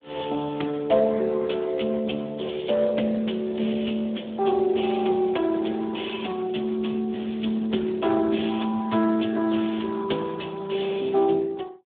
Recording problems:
telephone audio; 170 Hz to 3.6 kHz, Speex
crackle; from 3.5 to 8 s and at 9 s; loose cable, SNR 27 dB

